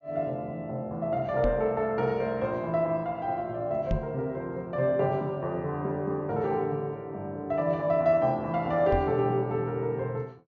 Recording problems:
treble cut off; nothing above 6.9 kHz
microphone thump; at 1.5 s, at 4 s and at 9 s; peak +2 dB vs average level

